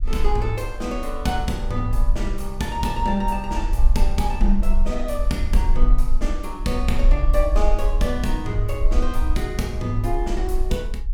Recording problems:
low-frequency rumble; below 42 Hz, strongest tone 18 Hz, SNR 0 dB

